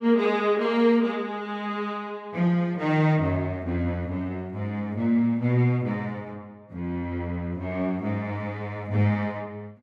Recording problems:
none

